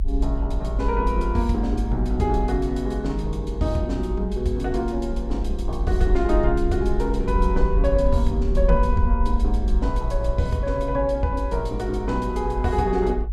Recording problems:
rumble; below 54 Hz, SNR 2 dB

